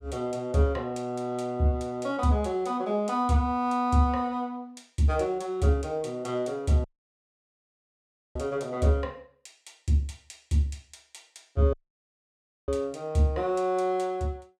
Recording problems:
audio cutting out; at 7 s for 1.5 s and at 12 s for 1 s

